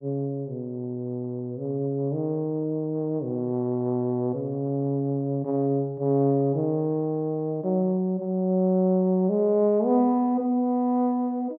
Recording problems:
none

